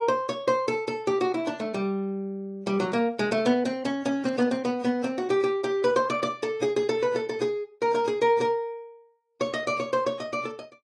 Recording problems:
codec artefacts; AAC, log-spectral distance 2 dB

